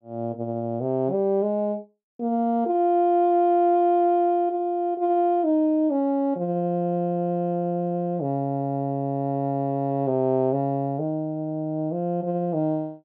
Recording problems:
none

